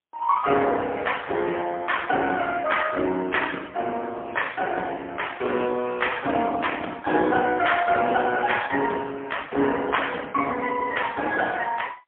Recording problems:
phone line; 240 Hz to 3.4 kHz, AMR-NB, then MP3

